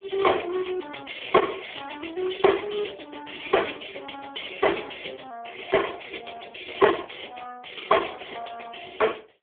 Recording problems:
phone line; 300 Hz to 3.6 kHz, AMR-NB

